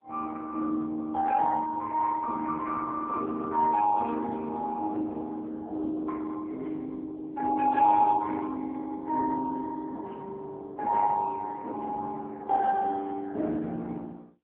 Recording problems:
phone line; 190 Hz to 2.1 kHz, AMR-NB

